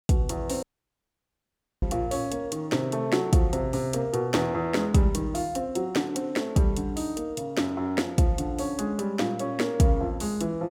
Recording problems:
dropout; at 0.5 s for 1 s

